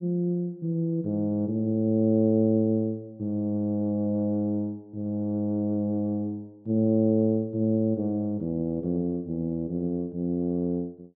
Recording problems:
none

